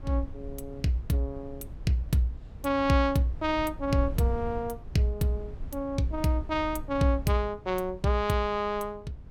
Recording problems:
wind on the microphone; below 94 Hz, SNR 14 dB

